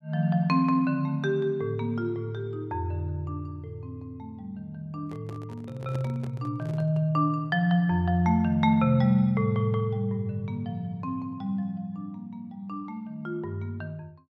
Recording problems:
microphone handling noise; from 5 to 7 s; peak -9 dB vs average level

